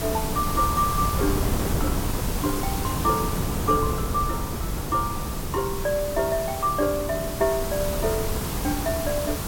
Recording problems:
background hiss; SNR 6 dB
wind on the microphone; below 290 Hz, SNR 3 dB

